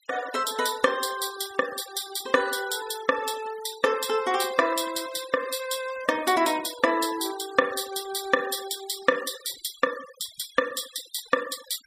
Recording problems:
denoising artefacts; signal-to-artefact ratio 16 dB

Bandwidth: 15 kHz